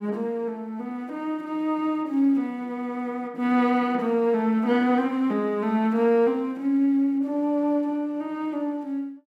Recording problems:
none

